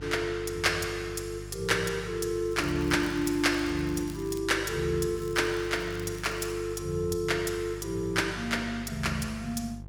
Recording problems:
hum; 50 Hz, harmonics up to 500 Hz, SNR 14 dB
crackle; from 2.5 to 4.5 s and from 5 to 6.5 s; loose cable, SNR 22 dB

